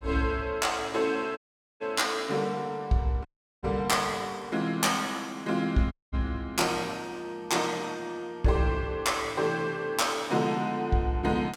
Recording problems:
dropout; at 1.5 s, at 3.5 s and at 6 s

